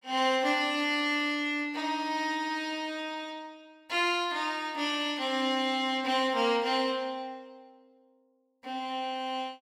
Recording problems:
none

